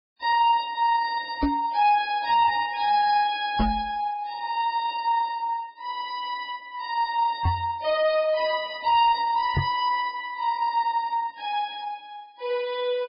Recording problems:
treble cut off; nothing above 4.4 kHz
codec artefacts; Vorbis, log-spectral distance 2 dB
distortion; soft clipping, signal-to-distortion ratio 10 dB
microphone thump; 4 times, first at 1.5 s; peak +4 dB vs average level

